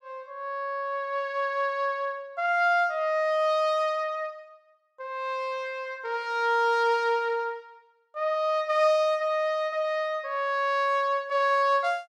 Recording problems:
none

